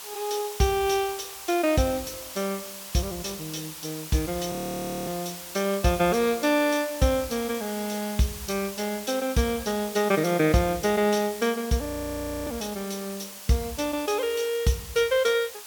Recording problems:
background hiss; SNR 11 dB
frozen audio; at 4.5 s for 0.5 s and at 12 s for 0.5 s

